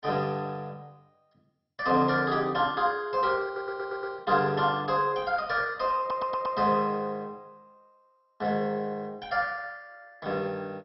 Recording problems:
lossy compression; MP2, log-spectral distance 3 dB, nothing above 5.5 kHz
stutter; at 3.5 s and at 6 s

